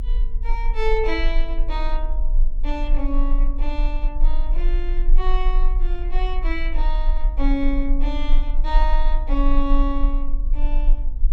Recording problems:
electrical hum; 60 Hz, harmonics up to 720 Hz, SNR 19 dB
rumble; below 34 Hz, strongest tone 24 Hz, SNR -5 dB

